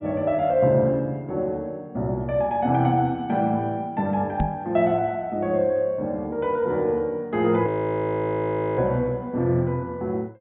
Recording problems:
treble missing; nothing above 3.8 kHz
microphone thump; at 4.5 s; peak +3 dB vs average level
audio freezing; at 7.5 s for 1 s

